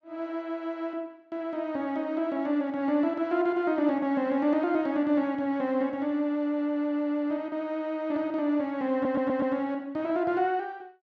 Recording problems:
audio stuttering; at 9 s

